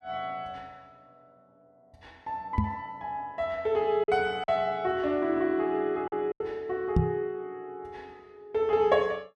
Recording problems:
packet loss; 3% of the sound replaced, filled with silence
knock on the microphone; at 2.5 s and at 7 s; peak +8 dB vs average level

